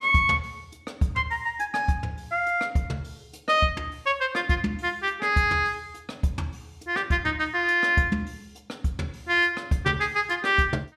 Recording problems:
none

